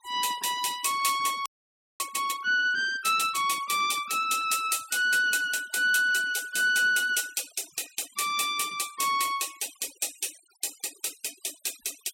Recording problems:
noise reduction artefacts; signal-to-artefact ratio 19 dB
frozen audio; at 1.5 s for 0.5 s

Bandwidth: 16.5 kHz